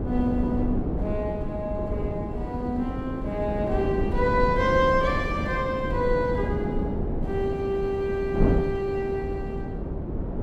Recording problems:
wind on the microphone; below 300 Hz, SNR 2 dB

